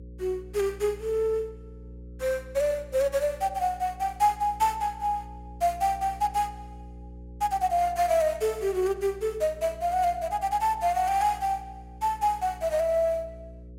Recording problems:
hum; 60 Hz, harmonics up to 540 Hz, SNR 18 dB

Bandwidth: 16 kHz